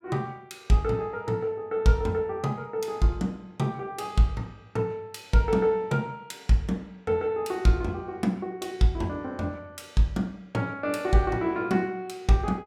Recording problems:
none

